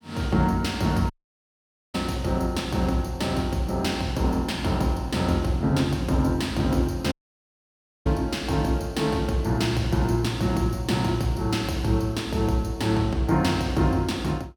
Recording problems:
audio cutting out; at 1 s for 1 s and at 7 s for 1 s

